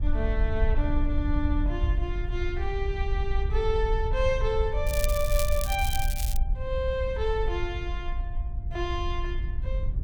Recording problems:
wind on the microphone; below 64 Hz, SNR -1 dB
crackling; from 5 to 6.5 s; loose cable, SNR 5 dB

